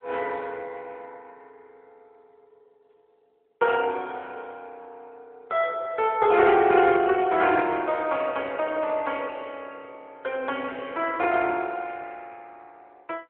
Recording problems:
phone line; 320 Hz to 3.5 kHz, AMR-NB

